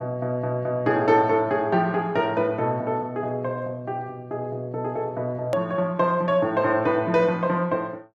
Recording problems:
click at an edit; at 5.5 s

